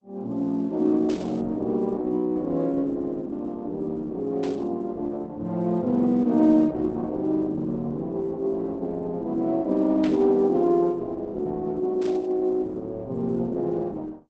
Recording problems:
lossy compression; Opus, log-spectral distance 2 dB, nothing above 7.6 kHz
static burst; 4 times, first at 1 s; peak -11 dB vs average level

